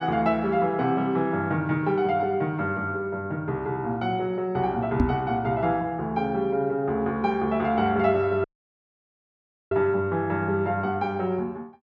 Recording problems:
knock on the microphone; at 5 s; peak +7 dB vs average level
dropout; at 8.5 s for 1.5 s

